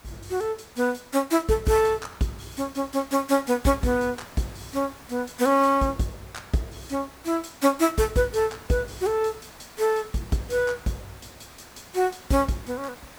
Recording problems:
background hiss; slope -3 dB per octave, SNR 21 dB

